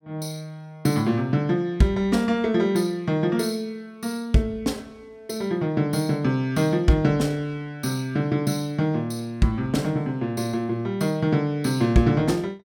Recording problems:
none

